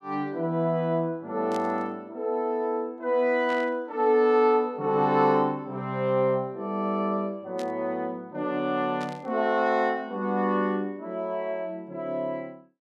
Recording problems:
burst of static; 4 times, first at 1.5 s; peak -11 dB vs average level

